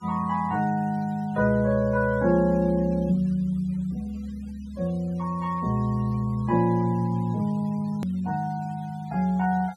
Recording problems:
denoising artefacts; signal-to-artefact ratio 27 dB
click at an edit; at 8 s

